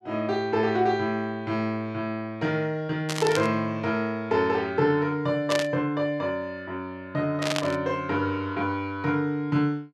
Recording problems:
static burst; at 3 s, at 5.5 s and at 7.5 s; peak +2 dB vs average level

